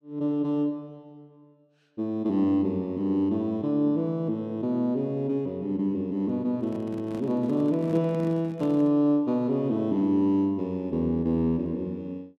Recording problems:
microphone handling noise; from 6.5 to 9 s; peak -7 dB vs average level

